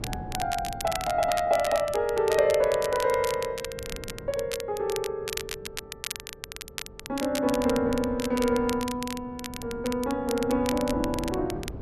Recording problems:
wind on the microphone; below 260 Hz, SNR 16 dB
crackle; vinyl, SNR 10 dB

